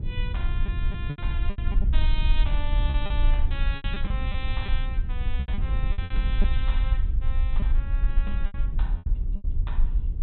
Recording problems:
low-pass filter; nothing above 4 kHz
hiss; SNR 40 dB
low-frequency rumble; below 50 Hz, SNR -10 dB
wind noise; below 130 Hz, SNR -2 dB
lost packets; 10% of the sound replaced, filled with repeated pitch periods

